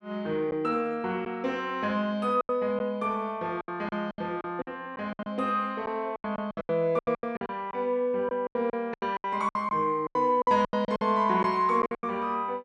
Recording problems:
packet loss; 14% of the sound replaced, filled with silence

